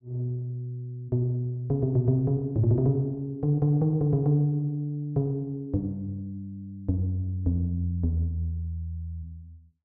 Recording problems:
none

